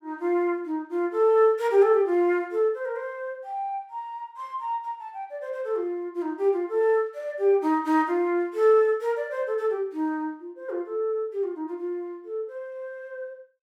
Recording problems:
none

